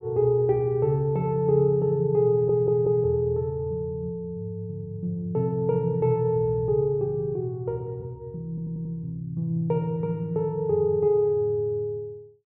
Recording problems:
audio stuttering; at 2.5 s and at 8.5 s

